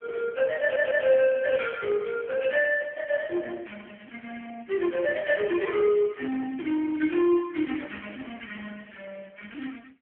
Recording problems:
telephone audio; 240 Hz to 3.3 kHz, AMR-NB
stutter; at 0.5 s

